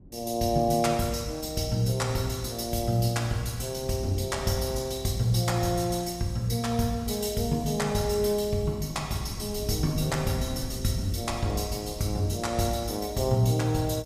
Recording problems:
wind noise; below 190 Hz, SNR 17 dB

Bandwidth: 15.5 kHz